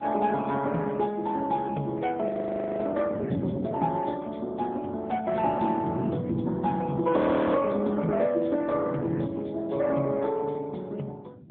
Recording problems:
telephone audio; 150 Hz to 3.3 kHz, AMR-NB
wind noise; below 290 Hz, SNR 10 dB
frozen audio; at 2.5 s for 0.5 s and at 7 s

